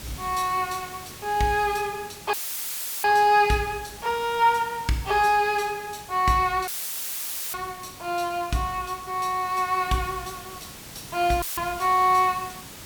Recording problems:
background hiss; slope -2 dB per octave, SNR 17 dB
dropout; at 2.5 s for 0.5 s, at 6.5 s for 1 s and at 11 s; filled with static

